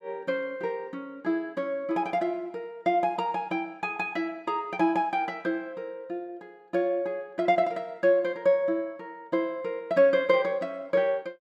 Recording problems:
none

